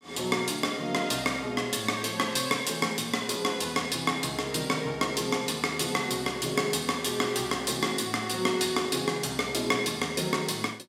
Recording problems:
none

